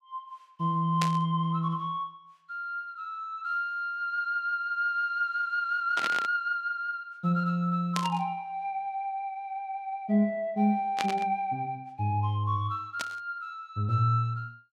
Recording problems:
static burst; 5 times, first at 1 s; peak +2 dB vs average level

